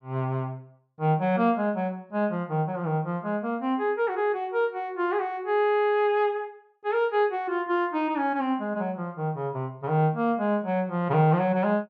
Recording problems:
none

